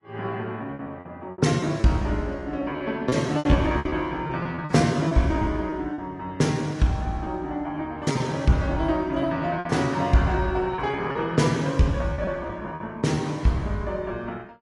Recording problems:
codec artefacts; AAC, log-spectral distance 2 dB
packet loss; 10% of the sound replaced, filled with repeated pitch periods

